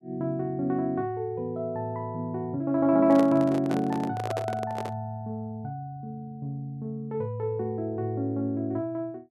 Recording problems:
handling noise; from 3 to 5 s; peak -1 dB vs average level

